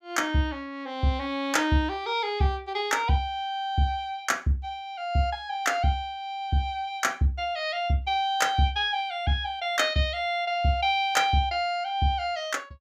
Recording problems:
none

